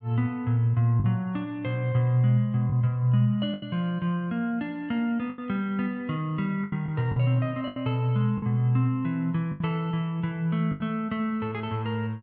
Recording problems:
packet loss; 5% of the sound replaced, filled with the last packet

